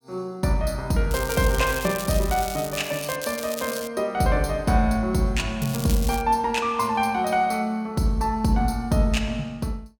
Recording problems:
crackling; from 1 to 3 s, at 3 s and at 5.5 s; loose cable, SNR 10 dB

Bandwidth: 17.5 kHz